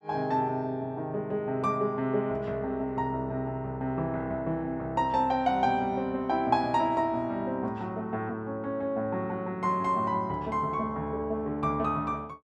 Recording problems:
none

